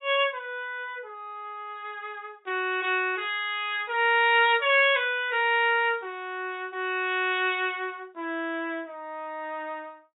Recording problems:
treble cut off; nothing above 4 kHz

